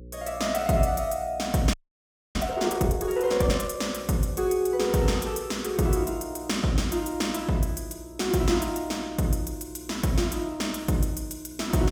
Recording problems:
hum; 60 Hz, harmonics up to 540 Hz, SNR 22 dB
audio freezing; at 1.5 s for 0.5 s

